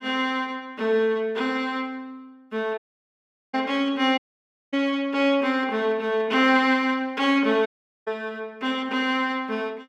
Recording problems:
audio cutting out; at 3 s for 1 s, at 4 s for 0.5 s and at 7.5 s

